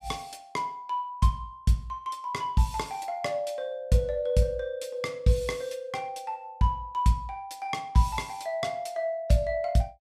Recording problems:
none

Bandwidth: 15 kHz